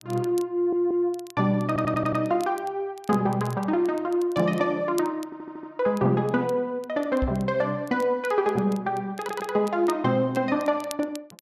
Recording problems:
crackling; vinyl, SNR 23 dB
stutter; 4 times, first at 0.5 s
microphone thump; at 7 s; peak 0 dB vs average level

